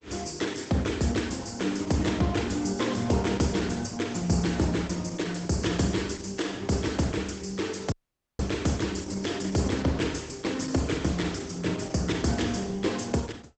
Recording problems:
lossy codec; Opus, log-spectral distance 7 dB, nothing above 8 kHz
audio cutting out; at 8 s

